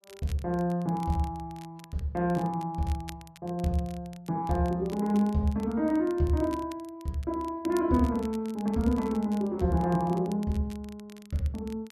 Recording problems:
crackling; vinyl, SNR 23 dB

